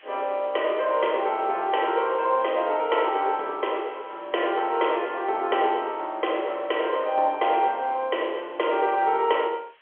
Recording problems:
telephone audio; 320 Hz to 3.3 kHz, G.711
background hiss; SNR 28 dB

